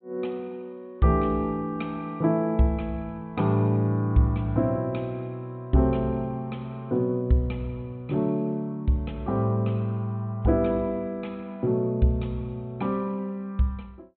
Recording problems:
low-pass filter; nothing above 4 kHz

